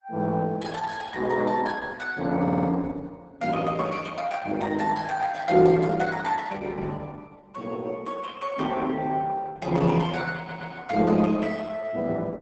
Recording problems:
lossy compression; Opus, log-spectral distance 4 dB, nothing above 8 kHz
stutter; at 2.5 s and at 10 s

